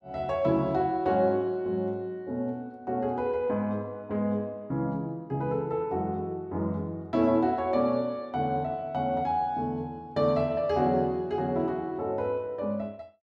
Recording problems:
none

